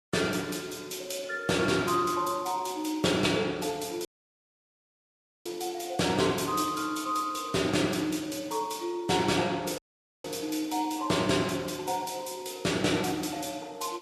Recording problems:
codec artefacts; Vorbis, log-spectral distance 5 dB, nothing above 13.5 kHz
audio cutting out; at 4 s for 1.5 s and at 10 s

